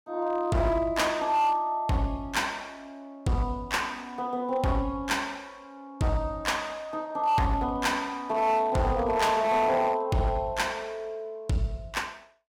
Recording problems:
distorted audio; hard clipping, signal-to-distortion ratio 12 dB

